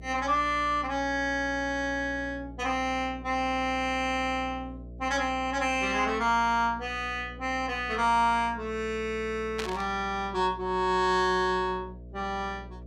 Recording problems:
mains hum; 60 Hz, harmonics up to 660 Hz, SNR 17 dB
burst of static; at 9.5 s; peak -2 dB vs average level

